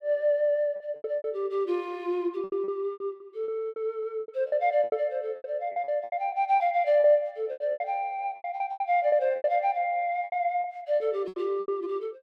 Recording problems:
packet loss; 16% of the sound replaced, filled with repeated pitch periods

